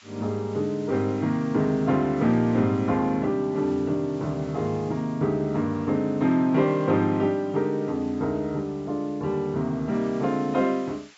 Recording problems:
treble missing; nothing above 8 kHz
hiss; SNR 27 dB

